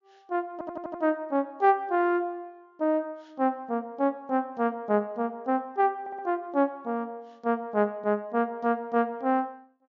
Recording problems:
treble missing; nothing above 7.2 kHz
stutter; at 0.5 s and at 6 s

